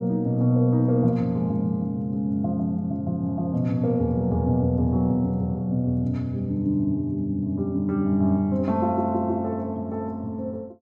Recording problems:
none

